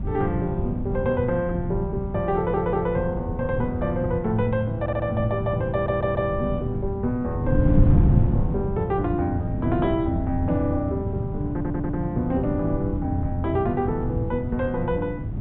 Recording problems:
low-pass filter; nothing above 4 kHz
wind noise; below 160 Hz, SNR 2 dB
audio stuttering; 4 times, first at 2.5 s

